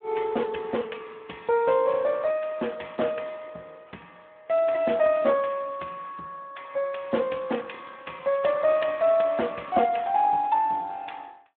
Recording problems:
telephone audio; 280 Hz to 3.3 kHz, Speex

